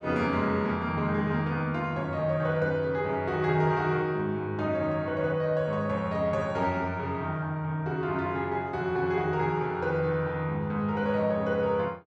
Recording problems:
none

